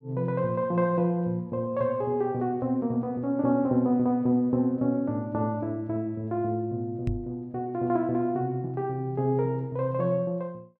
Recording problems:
knock on the microphone; at 7 s; peak +1 dB vs average level

